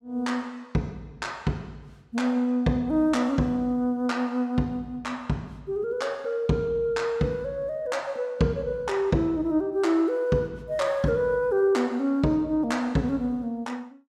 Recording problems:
none

